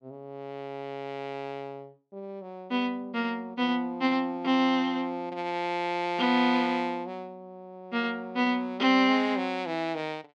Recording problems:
none

